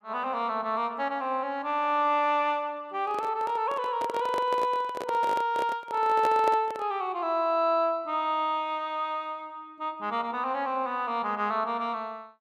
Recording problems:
microphone handling noise; from 3 to 7 s; peak 0 dB vs average level

